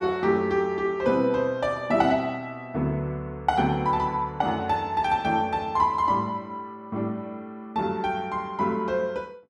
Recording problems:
none

